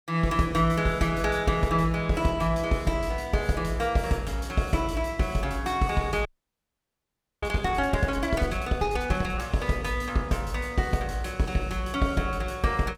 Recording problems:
audio freezing; at 6.5 s for 1 s

